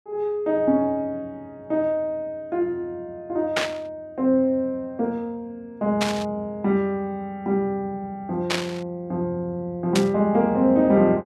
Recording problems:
burst of static; 4 times, first at 3.5 s; peak +5 dB vs average level

